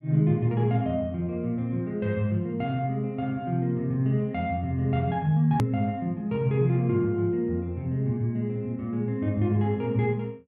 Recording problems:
edit click; at 5.5 s

